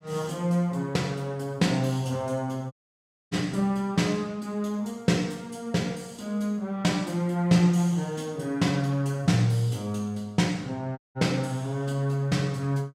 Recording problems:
audio cutting out; at 2.5 s for 0.5 s and at 11 s

